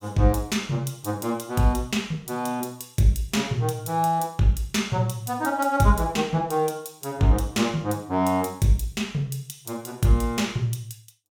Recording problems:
none

